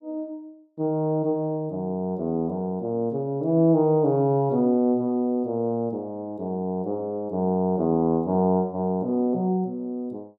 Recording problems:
none

